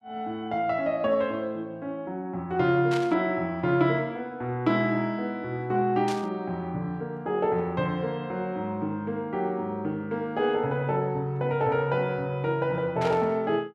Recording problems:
static burst; at 3 s, at 6 s and at 13 s; peak -5 dB vs average level

